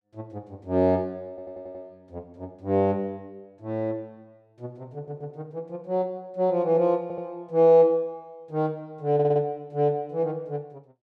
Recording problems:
audio stuttering; 4 times, first at 1.5 s

